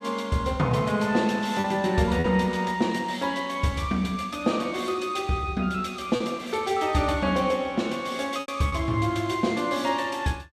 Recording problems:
lost packets; 2% of the sound replaced, filled with repeated pitch periods

